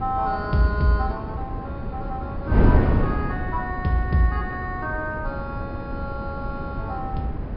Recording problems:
treble missing; nothing above 5.2 kHz
wind noise; below 250 Hz, SNR 0 dB

